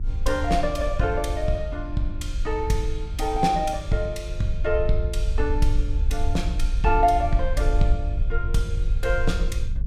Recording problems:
hum; 50 Hz, harmonics up to 400 Hz, SNR 15 dB
rumble; below 58 Hz, SNR 2 dB

